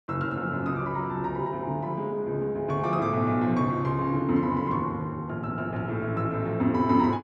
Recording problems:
none

